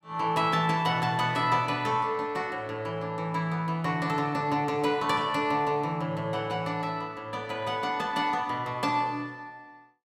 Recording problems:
none

